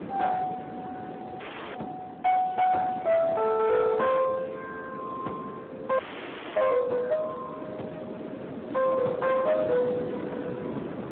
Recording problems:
phone line; 240 Hz to 3 kHz, Speex
distorted audio; hard clipping, signal-to-distortion ratio 12 dB
wind noise; below 580 Hz, SNR 12 dB
audio freezing; at 1.5 s and at 6 s for 0.5 s

